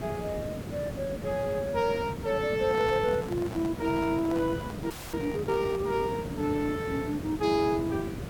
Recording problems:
hiss; SNR 8 dB
handling noise; from 2.5 to 6 s; peak -8 dB vs average level
audio freezing; at 5 s

